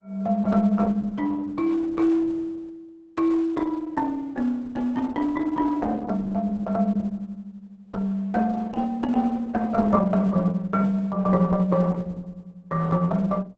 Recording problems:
lossy codec; Opus, log-spectral distance 3 dB, nothing above 8 kHz

